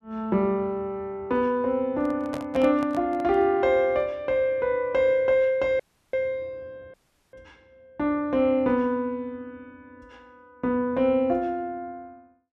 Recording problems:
microphone handling noise; from 2 to 3.5 s; peak -6 dB vs average level
audio cutting out; at 6 s and at 7 s

